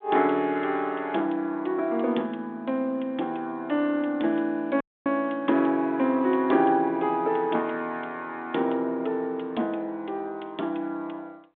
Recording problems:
telephone audio; 220 Hz to 3.6 kHz, G.726
audio cutting out; at 5 s

